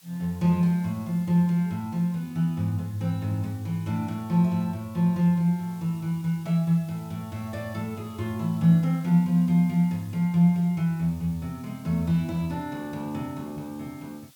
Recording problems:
background hiss; slope +2 dB per octave, SNR 27 dB

